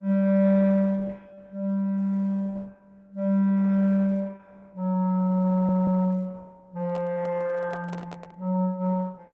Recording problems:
lossy compression; Opus, log-spectral distance 2 dB
audio stuttering; at 5.5 s
microphone handling noise; from 7 to 8.5 s; peak -10 dB vs average level

